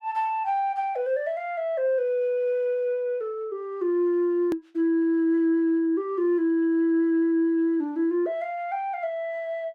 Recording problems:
hard cut with a click; at 4.5 s

